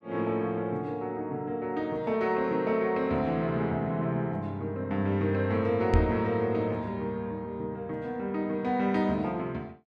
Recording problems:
microphone thump; at 6 s; peak +7 dB vs average level

